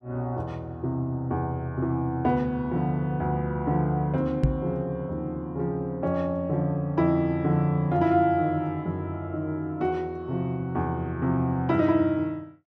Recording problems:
microphone thump; at 4.5 s; peak +7 dB vs average level

